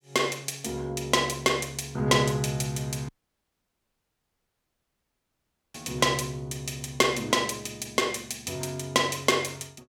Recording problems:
dropout; at 3 s for 2.5 s

